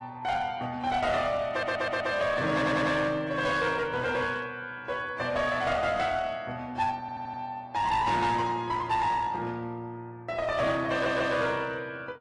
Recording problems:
codec artefacts; AAC, log-spectral distance 2 dB, nothing above 10.4 kHz
distortion; hard clipping, uneven, signal-to-distortion ratio 10 dB
audio stuttering; 4 times, first at 1.5 s

